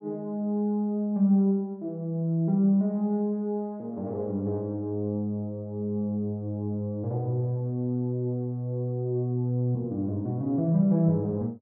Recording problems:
none

